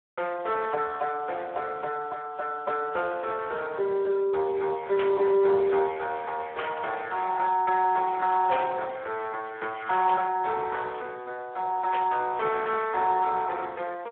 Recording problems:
phone line; 340 Hz to 3.9 kHz, Speex
burst of static; 5 times, first at 5 s; peak -3 dB vs average level

